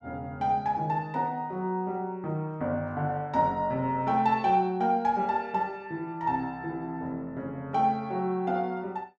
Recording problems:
none

